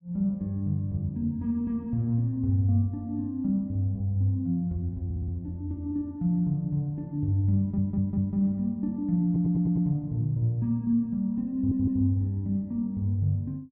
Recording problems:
audio stuttering; 4 times, first at 5 s

